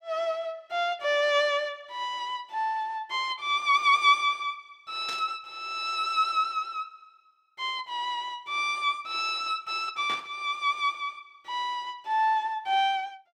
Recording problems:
static burst; at 5 s and at 10 s; peak -6 dB vs average level

